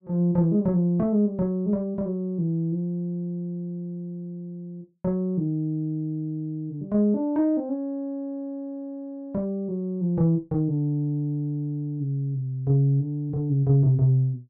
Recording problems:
none

